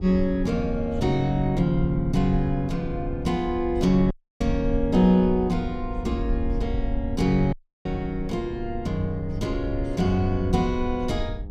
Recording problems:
hum; 50 Hz, harmonics up to 900 Hz, SNR 18 dB
low-frequency rumble; below 70 Hz, SNR 9 dB
audio cutting out; at 4 s and at 7.5 s

